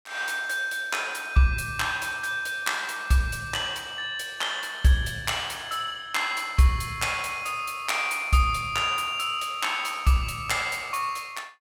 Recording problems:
none

